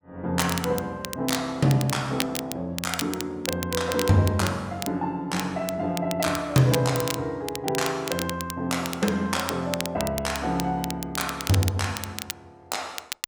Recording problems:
crackling; vinyl, SNR 8 dB

